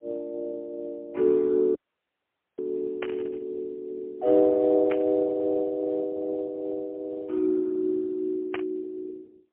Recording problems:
telephone audio; 300 Hz to 2.1 kHz, AMR-NB, then MP3
dropout; at 2 s for 1 s
static burst; at 3 s, at 5 s and at 8.5 s; peak -2 dB vs average level

